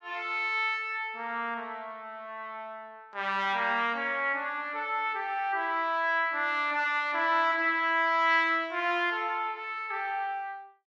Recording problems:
none

